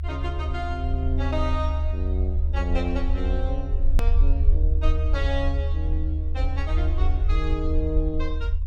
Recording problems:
low-frequency rumble; below 74 Hz, SNR -6 dB
hard cut with a click; at 4 s

